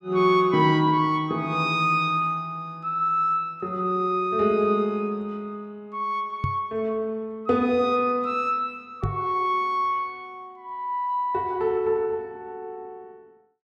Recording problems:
knock on the microphone; at 6.5 s and at 9 s; peak +1 dB vs average level

